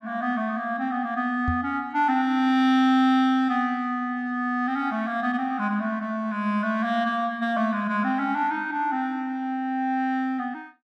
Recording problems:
microphone bump; at 1.5 s; peak 0 dB vs average level

